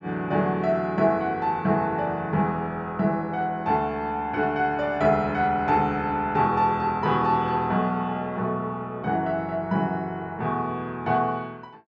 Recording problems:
low-pass filter; nothing above 8 kHz

